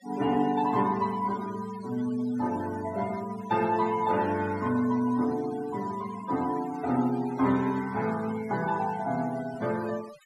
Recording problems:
denoising artefacts; signal-to-artefact ratio 17 dB

